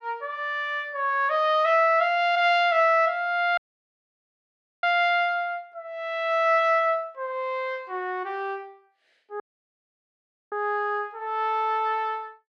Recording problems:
dropout; at 3.5 s for 1.5 s and at 9.5 s for 1 s

